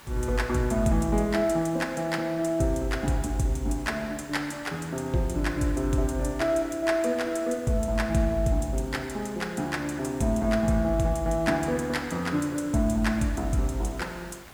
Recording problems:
background hiss; slope -3 dB per octave, SNR 21 dB

